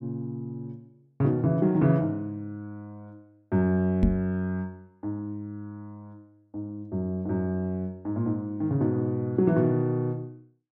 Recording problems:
microphone bump; at 4 s; peak +7 dB vs average level

